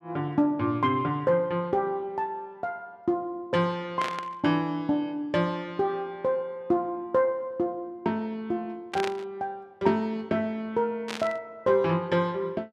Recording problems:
static burst; at 4 s, at 9 s and at 11 s; peak -1 dB vs average level

